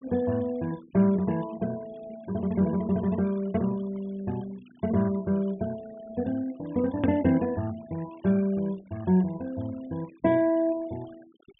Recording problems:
low-pass filter; nothing above 3.5 kHz
noise reduction artefacts; signal-to-artefact ratio 24 dB
edit click; at 7 s

